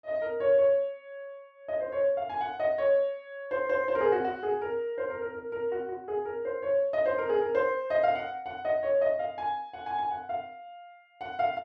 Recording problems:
none

